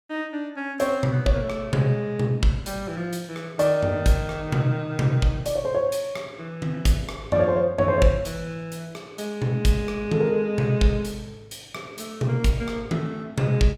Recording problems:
none

